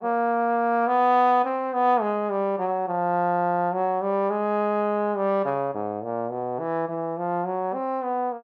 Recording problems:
none

